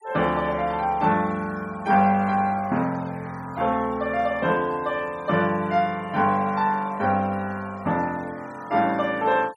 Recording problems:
noise reduction artefacts; signal-to-artefact ratio 25 dB

